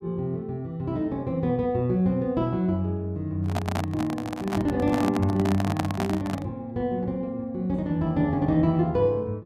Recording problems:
microphone handling noise; from 3.5 to 6.5 s; peak +2 dB vs average level

